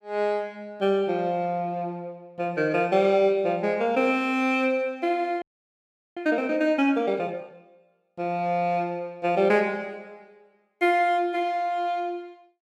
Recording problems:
frozen audio; at 5.5 s for 0.5 s

